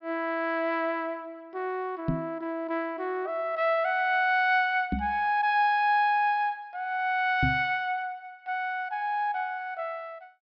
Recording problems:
treble cut off; nothing above 5.5 kHz
knock on the microphone; at 2 s, at 5 s and at 7.5 s; peak +3 dB vs average level

